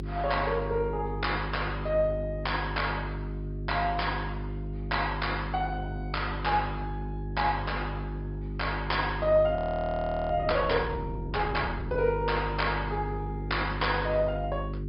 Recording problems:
treble cut off; nothing above 5.2 kHz
lossy compression; Opus, log-spectral distance 2 dB
hum; 50 Hz, harmonics up to 400 Hz, SNR 6 dB
frozen audio; at 9.5 s for 0.5 s

